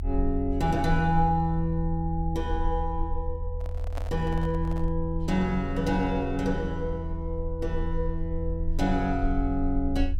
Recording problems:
rumble; below 78 Hz, strongest tone 22 Hz, SNR 5 dB
handling noise; from 3.5 to 5 s; peak -6 dB vs average level

